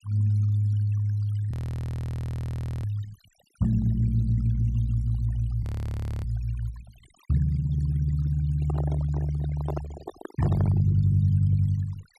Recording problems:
noise reduction artefacts; signal-to-artefact ratio 19 dB
frozen audio; at 1.5 s for 1.5 s and at 5.5 s for 0.5 s
microphone handling noise; from 8.5 to 11 s; peak -3 dB vs average level

